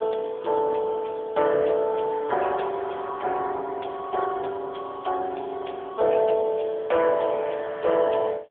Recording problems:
telephone audio; 320 Hz to 3.4 kHz, AMR-NB

